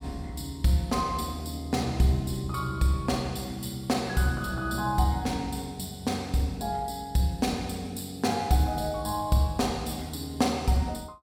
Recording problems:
none

